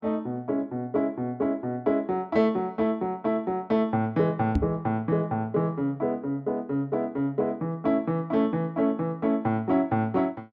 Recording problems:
knock on the microphone; at 4.5 s; peak +6 dB vs average level

